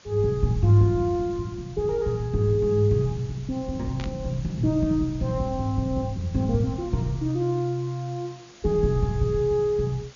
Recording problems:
treble cut off; nothing above 7 kHz
background hiss; slope -1 dB per octave, SNR 24 dB
burst of static; at 4 s; peak -10 dB vs average level

